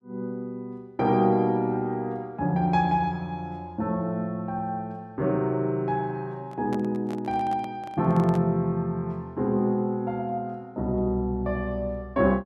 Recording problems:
microphone handling noise; from 6.5 to 8.5 s; peak -7 dB vs average level

